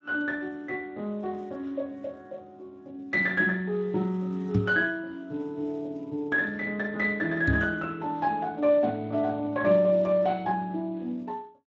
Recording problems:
codec artefacts; Speex, log-spectral distance 2 dB
knock on the microphone; at 4.5 s and at 7.5 s; peak +6 dB vs average level

